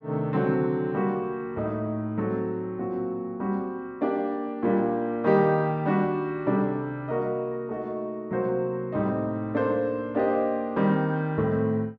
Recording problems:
none

